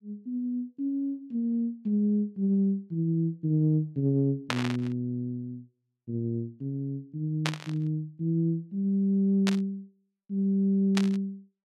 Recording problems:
static burst; 4 times, first at 4.5 s; peak +3 dB vs average level

